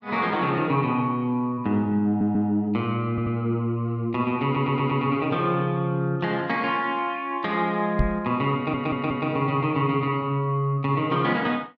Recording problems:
stutter; 4 times, first at 2 s
knock on the microphone; at 8 s; peak +5 dB vs average level

